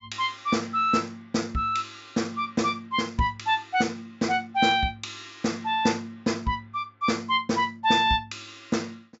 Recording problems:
low-pass filter; nothing above 8 kHz

